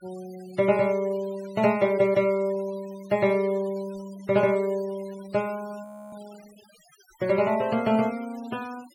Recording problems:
denoising artefacts; signal-to-artefact ratio 22 dB
frozen audio; at 6 s

